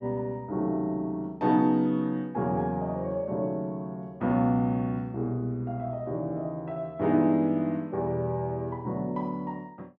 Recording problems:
none

